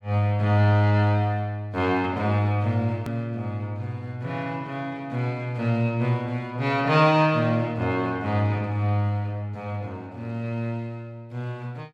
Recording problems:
hard cut with a click; at 3 s

